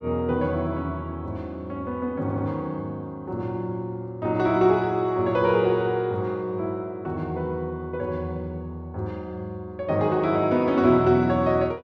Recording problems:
stutter; at 2 s

